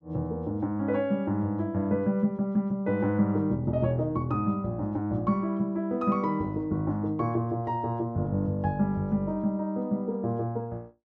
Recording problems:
none

